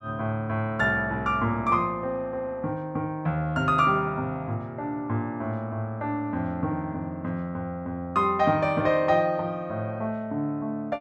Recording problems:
none

